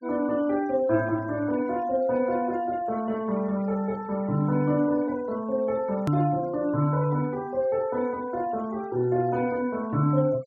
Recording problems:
treble missing; nothing above 8 kHz
denoising artefacts; signal-to-artefact ratio 25 dB
hard cut with a click; at 6 s

